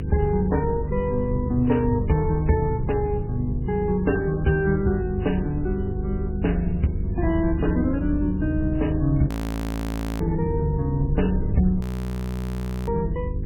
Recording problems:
codec artefacts; MP3, log-spectral distance 2 dB, nothing above 17.1 kHz
hum; 50 Hz, harmonics up to 500 Hz, SNR 8 dB
rumble; below 76 Hz, SNR 7 dB
frozen audio; at 9.5 s for 1 s and at 12 s for 1 s

